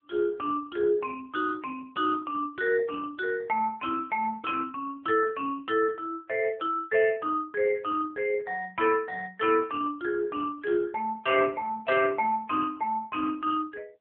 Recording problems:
phone line; 320 Hz to 2.6 kHz, AMR-NB

